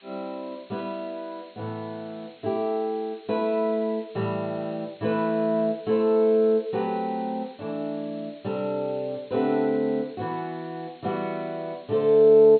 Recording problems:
low-pass filter; nothing above 4.3 kHz
hiss; SNR 27 dB

